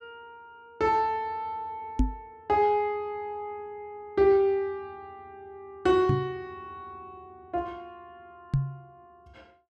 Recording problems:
knock on the microphone; at 2 s, at 6 s and at 8.5 s; peak +6 dB vs average level

